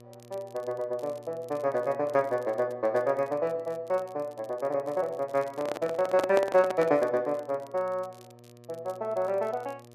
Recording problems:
hum; 60 Hz, harmonics up to 1.2 kHz, SNR 24 dB
crackle; vinyl, SNR 29 dB
microphone handling noise; from 5.5 to 7 s; peak +3 dB vs average level

